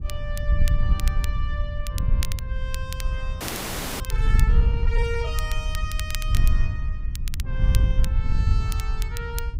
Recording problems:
wind on the microphone; below 70 Hz, SNR -10 dB
crackling; vinyl, SNR 4 dB
frozen audio; at 3.5 s for 0.5 s

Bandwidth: 15.5 kHz